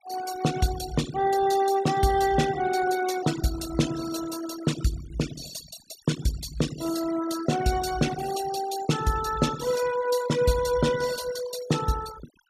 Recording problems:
denoising artefacts; signal-to-artefact ratio 13 dB

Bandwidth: 14.5 kHz